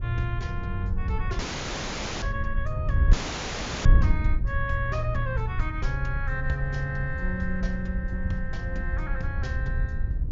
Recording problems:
low-pass filter; nothing above 6.9 kHz
codec artefacts; MP2, log-spectral distance 3 dB
wind noise; below 80 Hz, SNR -3 dB
audio cutting out; at 1.5 s for 1 s and at 3 s for 0.5 s

